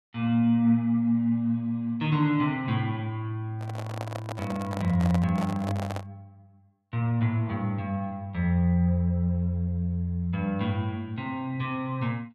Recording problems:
handling noise; from 3.5 to 6 s; peak -3 dB vs average level

